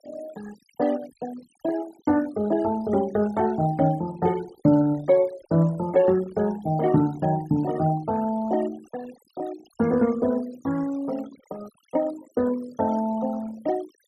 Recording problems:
noise reduction artefacts; signal-to-artefact ratio 21 dB

